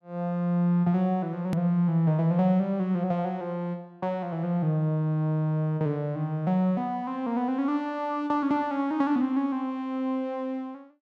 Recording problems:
click at an edit; at 1.5 s

